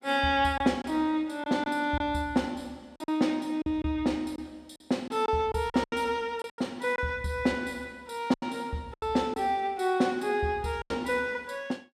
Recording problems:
lost packets; 7% of the sound replaced, filled with silence

